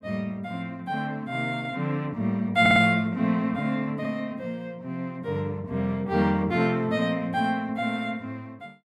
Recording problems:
stutter; at 2.5 s

